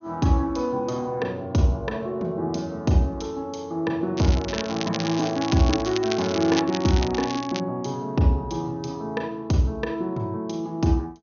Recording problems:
treble missing; nothing above 6.5 kHz
crackling; from 4 to 7.5 s; loose cable, SNR 9 dB

